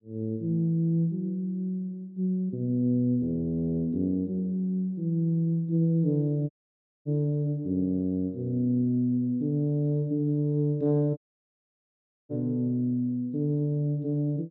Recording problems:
audio cutting out; at 6.5 s for 0.5 s and at 11 s for 1 s

